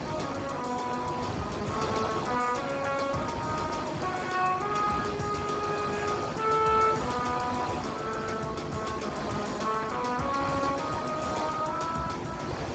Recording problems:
codec artefacts; Speex, log-spectral distance 6 dB, nothing above 7.6 kHz
electrical hum; 50 Hz, harmonics up to 500 Hz, SNR 11 dB
wind noise; below 1.3 kHz, SNR 6 dB
crackling; at 9 s; loose cable, SNR 30 dB

